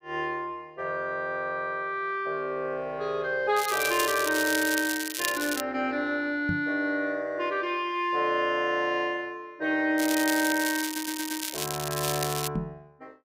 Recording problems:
crackling; from 3.5 to 5.5 s and from 10 to 12 s; loose cable, SNR 4 dB
microphone bump; at 6.5 s and at 13 s; peak +1 dB vs average level
audio stuttering; at 11 s

